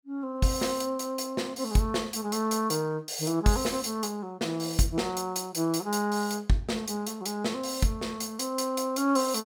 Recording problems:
none

